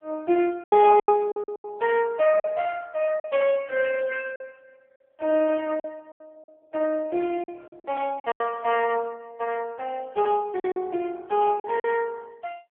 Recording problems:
telephone audio; 280 Hz to 3.2 kHz, AMR-NB
lost packets; 9% of the sound replaced, filled with silence

